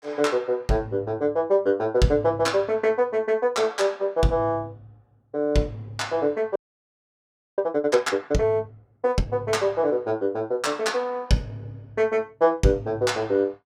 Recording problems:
audio freezing; at 6.5 s for 1 s

